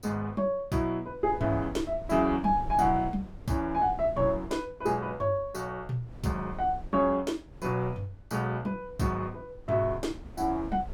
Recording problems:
wind on the microphone; below 140 Hz, SNR 15 dB

